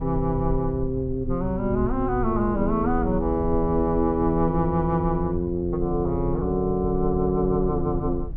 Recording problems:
rumble; below 72 Hz, SNR 10 dB

